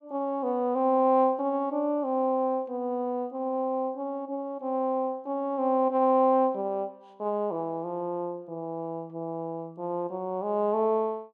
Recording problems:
none

